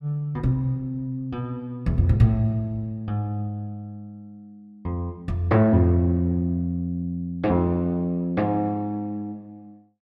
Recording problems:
none

